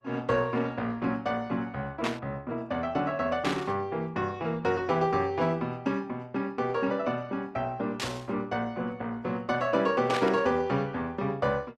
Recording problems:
codec artefacts; Opus, log-spectral distance 2 dB
static burst; 4 times, first at 2 s; peak +1 dB vs average level

